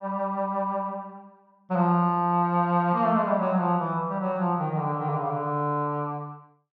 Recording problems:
none

